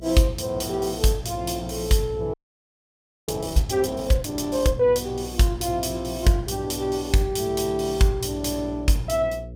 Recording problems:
electrical hum; 60 Hz, harmonics up to 540 Hz, SNR 15 dB
frozen audio; at 2.5 s for 1 s

